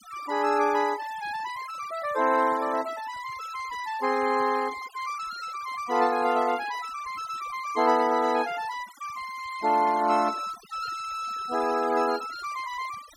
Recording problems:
noise reduction artefacts; signal-to-artefact ratio 18 dB

